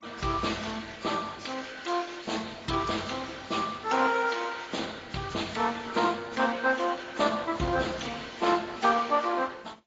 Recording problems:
lossy compression; Opus, then AAC, log-spectral distance 5 dB, nothing above 7.3 kHz

